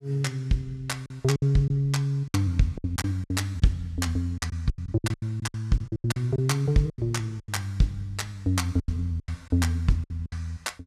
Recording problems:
lost packets; 13% of the sound replaced, filled with silence

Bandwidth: 14.5 kHz